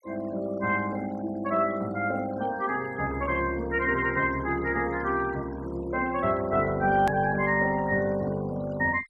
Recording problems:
noise reduction artefacts; signal-to-artefact ratio 22 dB
hard cut with a click; at 7 s

